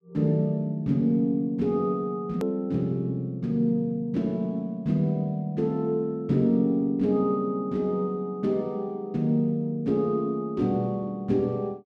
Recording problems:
hard cut with a click; at 2.5 s

